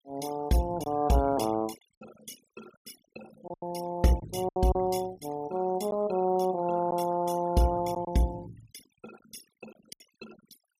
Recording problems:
noise reduction artefacts; signal-to-artefact ratio 18 dB
packet loss; 5% of the sound replaced, filled with silence

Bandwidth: 15 kHz